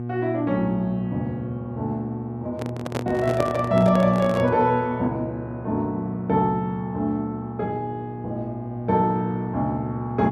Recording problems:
electrical hum; 60 Hz, harmonics up to 840 Hz, SNR 8 dB
handling noise; from 2.5 to 4.5 s; peak +1 dB vs average level

